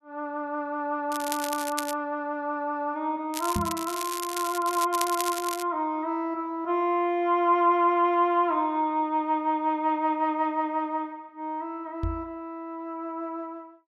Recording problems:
crackle; at 1 s and from 3.5 to 5.5 s; loose cable, SNR 8 dB
microphone thump; at 3.5 s and at 12 s; peak +1 dB vs average level

